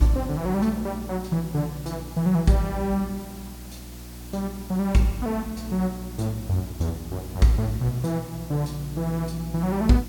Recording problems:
mains hum; 60 Hz, harmonics up to 360 Hz, SNR 13 dB
hiss; slope -2 dB per octave, SNR 18 dB

